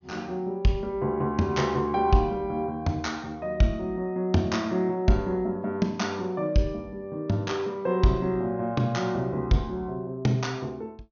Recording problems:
low-pass filter; nothing above 6.6 kHz

